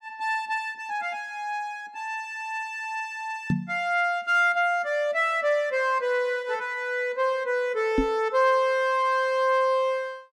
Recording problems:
microphone thump; at 3.5 s and at 8 s; peak +5 dB vs average level

